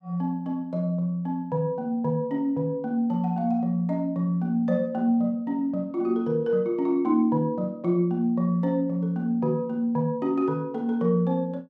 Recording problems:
none

